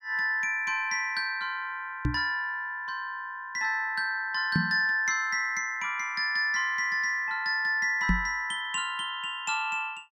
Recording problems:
microphone thump; at 2 s, at 4.5 s and at 8 s; peak +5 dB vs average level

